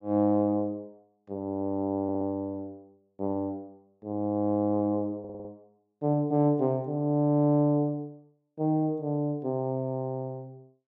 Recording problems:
stutter; at 2 s and at 5 s

